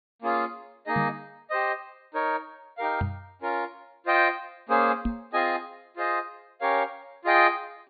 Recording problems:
low-pass filter; nothing above 4.6 kHz
knock on the microphone; at 1 s, at 3 s and at 5 s; peak +2 dB vs average level

